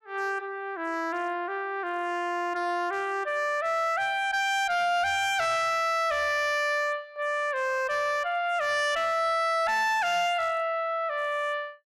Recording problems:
distorted audio; hard clipping, uneven, signal-to-distortion ratio 11 dB

